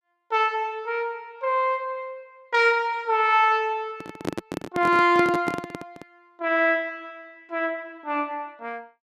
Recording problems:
microphone handling noise; from 4 to 6 s; peak 0 dB vs average level

